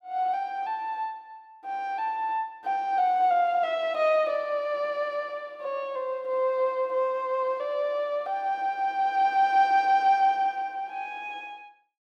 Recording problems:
none

